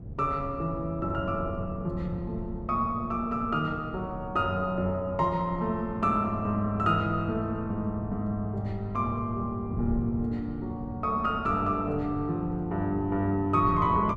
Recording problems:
wind noise; below 170 Hz, SNR 11 dB

